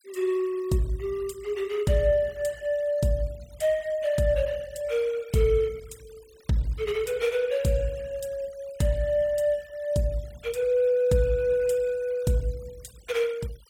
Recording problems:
noise reduction artefacts; signal-to-artefact ratio 24 dB

